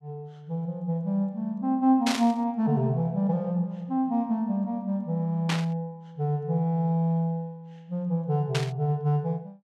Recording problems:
burst of static; at 2 s, at 5.5 s and at 8.5 s; peak +2 dB vs average level

